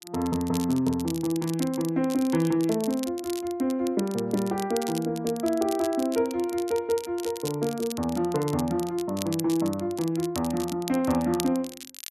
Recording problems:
crackle; vinyl, SNR 13 dB

